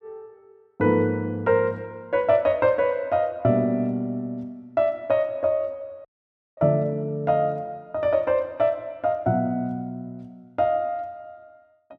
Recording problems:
dropout; at 6 s for 0.5 s

